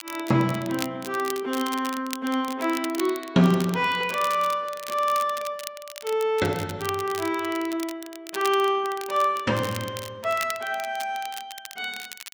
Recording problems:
crackling; vinyl, SNR 13 dB

